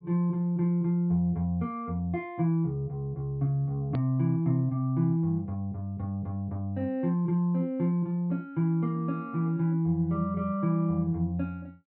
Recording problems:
low-pass filter; nothing above 4.7 kHz
click at an edit; at 4 s

